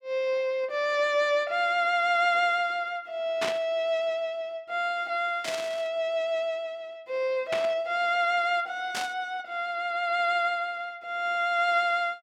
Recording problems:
static burst; 4 times, first at 3.5 s; peak 0 dB vs average level

